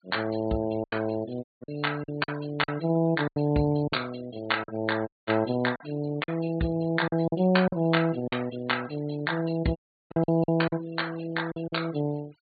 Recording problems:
treble missing; nothing above 4.6 kHz
noise reduction artefacts; signal-to-artefact ratio 20 dB
packet loss; 8% of the sound replaced, filled with silence
dropout; at 1.5 s, at 5 s and at 10 s

